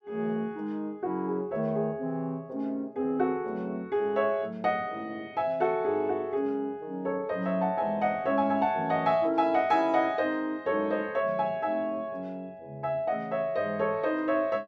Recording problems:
none

